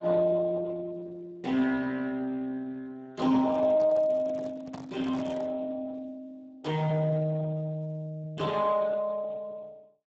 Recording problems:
codec artefacts; Speex, log-spectral distance 3 dB, nothing above 7.6 kHz
handling noise; from 3.5 to 5.5 s; peak -9 dB vs average level

